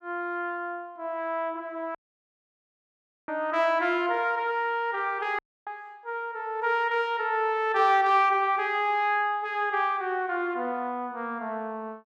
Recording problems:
dropout; at 2 s for 1.5 s and at 5.5 s

